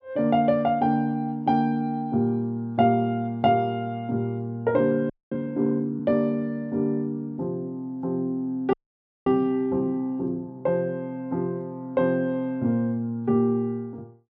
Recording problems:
audio freezing; at 5 s and at 8.5 s for 0.5 s

